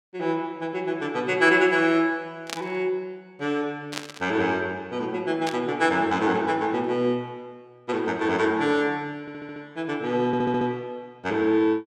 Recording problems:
static burst; at 2.5 s, at 4 s and at 5.5 s; peak -2 dB vs average level
stutter; at 9 s and at 10 s

